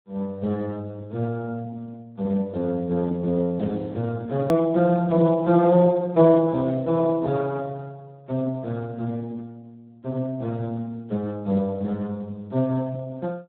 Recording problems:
telephone audio; 130 Hz to 2.1 kHz, Speex
hard cut with a click; at 4.5 s

